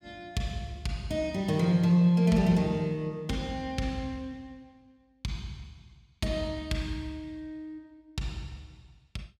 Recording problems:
none

